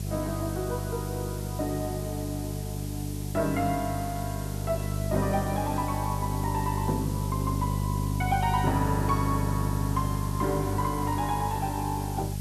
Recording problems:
electrical hum; 50 Hz, harmonics up to 450 Hz, SNR 1 dB
background hiss; SNR 11 dB

